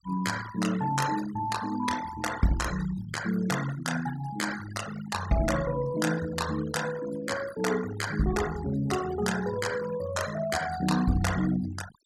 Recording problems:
denoising artefacts; signal-to-artefact ratio 11 dB

